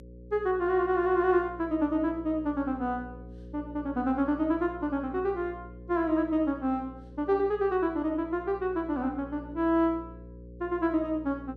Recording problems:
hum; 60 Hz, harmonics up to 540 Hz, SNR 17 dB

